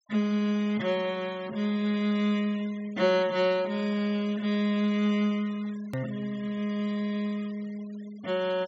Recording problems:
low-pass filter; nothing above 8 kHz
denoising artefacts; signal-to-artefact ratio 22 dB
click at an edit; at 6 s

